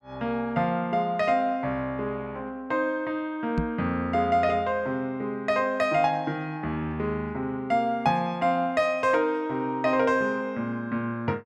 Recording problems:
microphone bump; at 3.5 s; peak +2 dB vs average level

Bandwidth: 12 kHz